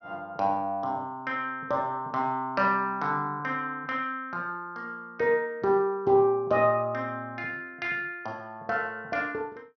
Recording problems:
treble missing; nothing above 6.2 kHz

